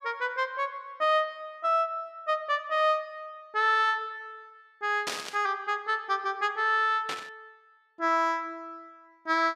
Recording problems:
static burst; at 5 s and at 7 s; peak 0 dB vs average level

